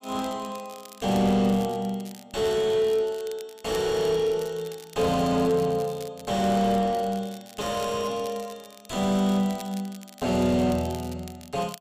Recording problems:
distorted audio; soft clipping, signal-to-distortion ratio 5 dB
crackle; vinyl, SNR 20 dB

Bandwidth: 15 kHz